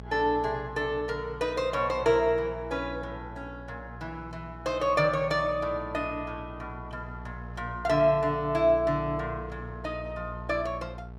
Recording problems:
hum; 60 Hz, harmonics up to 1.1 kHz, SNR 15 dB

